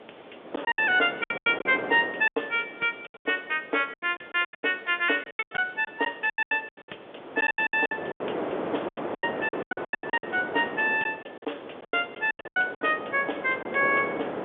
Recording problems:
phone line; 320 Hz to 3.6 kHz, G.711
hiss; SNR 30 dB
wind noise; below 850 Hz, SNR 9 dB
packet loss; 18% of the sound replaced, filled with silence

